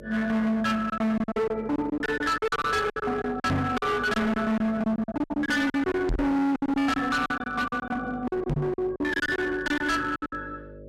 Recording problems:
distorted audio; hard clipping, uneven, signal-to-distortion ratio 6 dB
hum; 50 Hz, harmonics up to 600 Hz, SNR 18 dB
lost packets; 15% of the sound replaced, filled with silence
knock on the microphone; at 3.5 s, at 6 s and at 8.5 s; peak +3 dB vs average level

